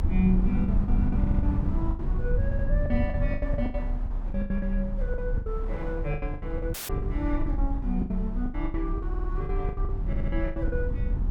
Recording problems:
low-frequency rumble; below 76 Hz, strongest tone 34 Hz, SNR -2 dB
wind on the microphone; below 730 Hz, SNR 12 dB
lost packets; 18% of the sound replaced, filled with the last packet
audio stuttering; 4 times, first at 1 s
audio cutting out; at 6.5 s

